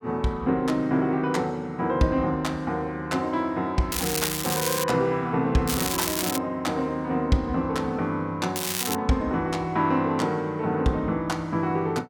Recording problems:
crackle; at 4 s, at 5.5 s and at 8.5 s; loose cable, SNR 2 dB

